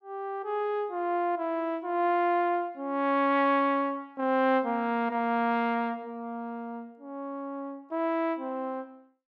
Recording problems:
none

